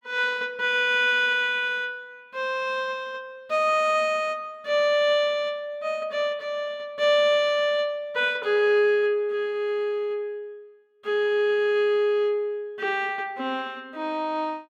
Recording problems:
none

